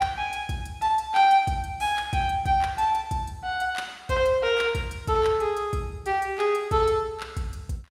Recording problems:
none

